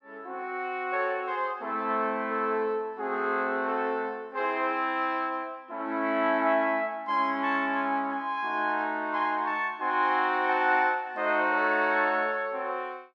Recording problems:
none

